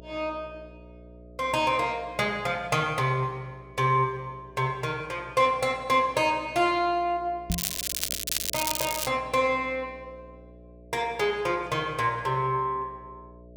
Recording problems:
hum; 60 Hz, harmonics up to 660 Hz, SNR 22 dB
microphone thump; at 7.5 s; peak +1 dB vs average level
crackle; from 7.5 to 9 s; loose cable, SNR 2 dB

